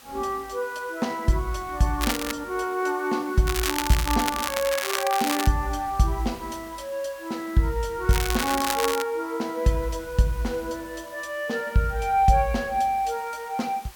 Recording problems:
hiss; SNR 21 dB
crackling; at 2 s, from 3.5 to 5.5 s and at 8 s; loose cable, SNR 3 dB

